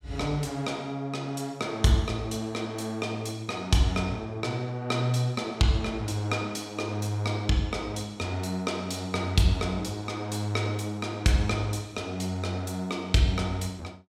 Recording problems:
none

